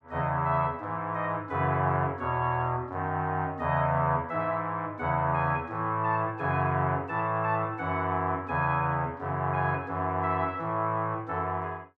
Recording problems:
none

